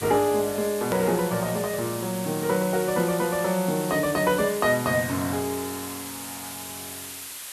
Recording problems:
background hiss; slope +2 dB per octave, SNR 10 dB
hard cut with a click; at 1 s

